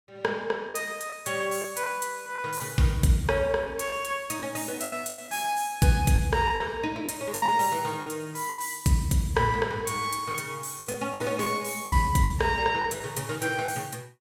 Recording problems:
lost packets; 7% of the sound replaced, filled with the last packet

